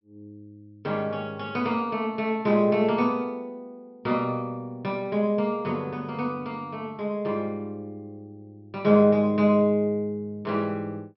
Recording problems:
treble cut off; nothing above 5.5 kHz

